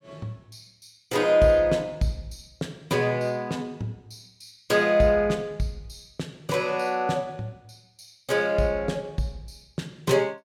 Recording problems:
none

